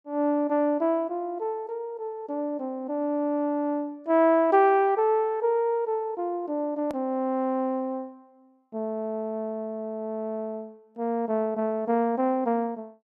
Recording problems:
click at an edit; at 7 s

